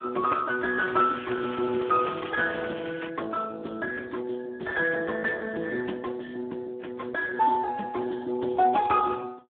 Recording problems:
phone line; 260 Hz to 3.4 kHz, Speex
crackle; from 1 to 3 s; loose cable, SNR 17 dB

